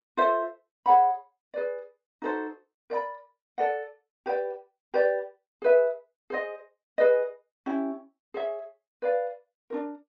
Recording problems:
treble missing; nothing above 8 kHz

